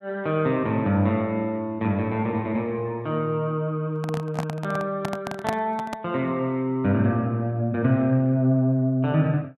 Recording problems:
microphone handling noise; from 4 to 6 s; peak +1 dB vs average level

